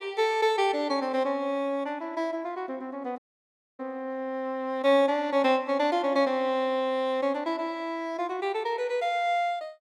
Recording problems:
dropout; at 3 s for 0.5 s

